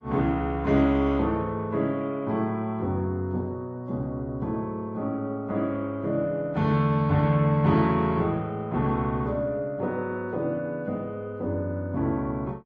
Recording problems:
codec artefacts; AAC, then Opus, log-spectral distance 2 dB

